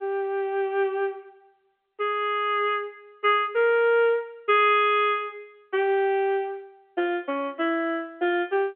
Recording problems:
phone line; 280 Hz to 3.5 kHz, G.711

